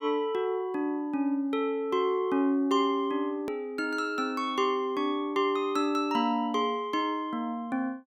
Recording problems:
hard cut with a click; at 3.5 s

